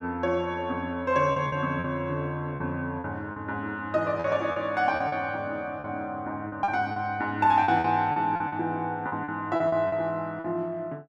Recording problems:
packet loss; 9% of the sound replaced, filled with repeated pitch periods

